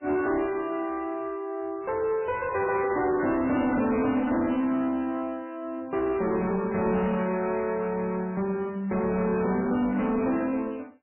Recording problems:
codec artefacts; MP3, log-spectral distance 3 dB, nothing above 2.5 kHz
distortion; soft clipping, signal-to-distortion ratio 11 dB

